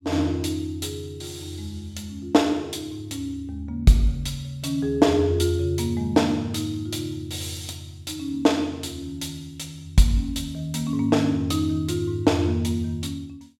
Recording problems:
none

